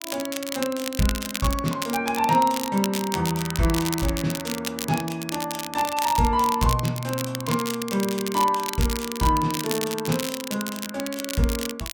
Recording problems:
crackling; vinyl, SNR 7 dB

